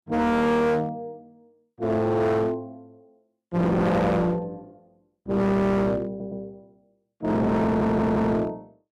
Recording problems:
distortion; hard clipping, uneven, signal-to-distortion ratio 6 dB
stutter; at 6 s and at 7.5 s

